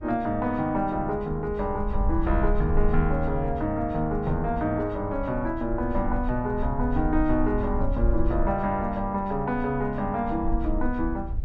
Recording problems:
low-frequency rumble; below 54 Hz, SNR 6 dB

